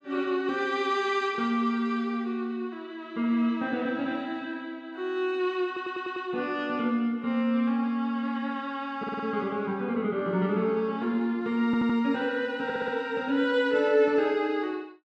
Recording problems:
stutter; 4 times, first at 5.5 s

